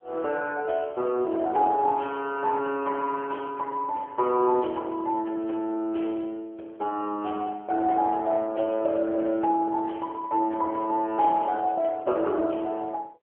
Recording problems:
phone line; 280 Hz to 3.2 kHz, AMR-NB

